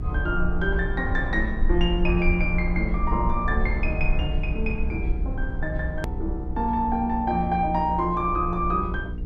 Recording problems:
hum; 60 Hz, harmonics up to 480 Hz, SNR 8 dB
rumble; below 56 Hz, SNR 5 dB
hard cut with a click; at 6 s

